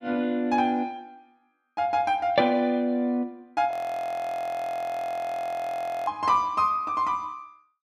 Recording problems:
audio freezing; at 3.5 s for 2.5 s

